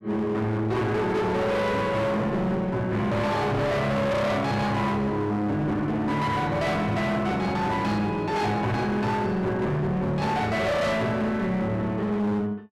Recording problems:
distorted audio; hard clipping, uneven, signal-to-distortion ratio 6 dB

